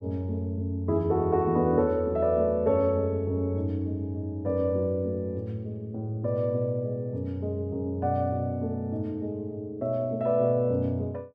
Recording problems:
none

